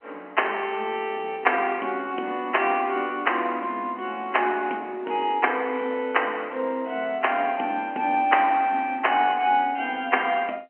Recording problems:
telephone audio; 220 Hz to 3.1 kHz, G.711

